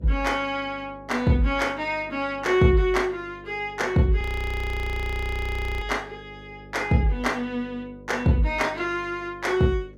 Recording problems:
hum; 50 Hz, harmonics up to 600 Hz, SNR 21 dB
frozen audio; at 4 s for 1.5 s

